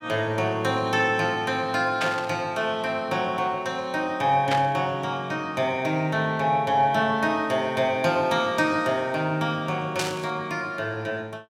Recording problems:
static burst; at 2 s, at 4.5 s and at 10 s; peak +1 dB vs average level

